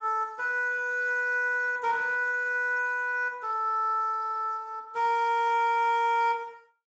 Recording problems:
lossy codec; Speex, log-spectral distance 2 dB

